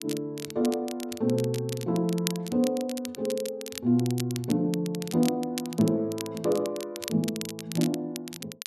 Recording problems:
crackle; vinyl, SNR 11 dB

